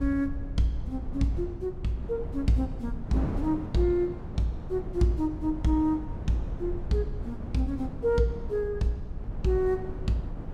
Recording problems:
low-frequency rumble; below 78 Hz, SNR 11 dB
wind on the microphone; below 330 Hz, SNR 11 dB

